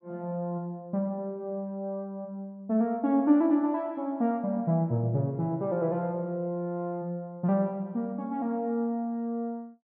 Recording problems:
none

